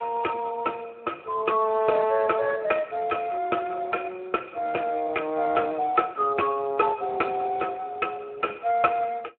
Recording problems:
phone line; 280 Hz to 3.3 kHz, Speex

